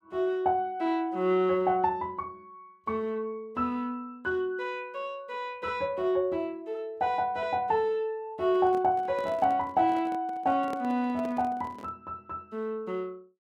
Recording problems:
handling noise; from 8.5 to 12 s; peak -6 dB vs average level

